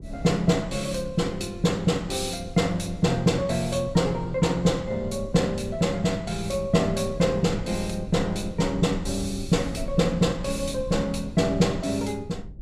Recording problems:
low-frequency rumble; below 100 Hz, SNR 14 dB

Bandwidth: 14.5 kHz